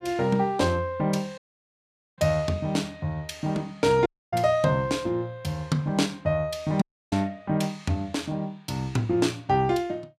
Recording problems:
dropout; at 1.5 s for 1 s, at 4 s and at 7 s

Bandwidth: 15.5 kHz